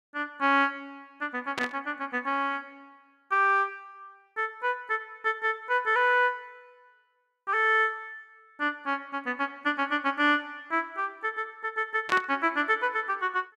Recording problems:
burst of static; at 1.5 s and at 12 s; peak 0 dB vs average level

